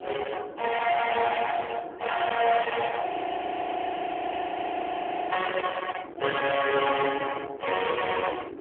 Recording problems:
phone line; 300 Hz to 3.3 kHz, AMR-NB
distorted audio; hard clipping, uneven, signal-to-distortion ratio 8 dB
wind on the microphone; below 1.7 kHz, SNR 11 dB
audio freezing; at 3 s for 2.5 s

